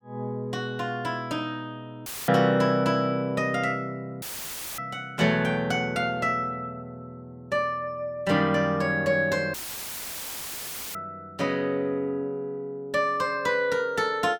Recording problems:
dropout; at 2 s, at 4 s for 0.5 s and at 9.5 s for 1.5 s; filled with static

